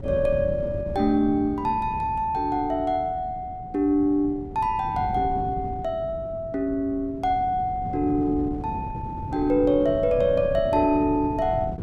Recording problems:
wind noise; below 220 Hz, SNR 11 dB

